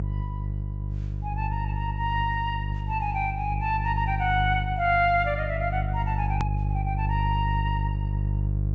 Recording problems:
low-pass filter; nothing above 8 kHz
hum; 50 Hz, harmonics up to 350 Hz, SNR 1 dB
edit click; at 6.5 s

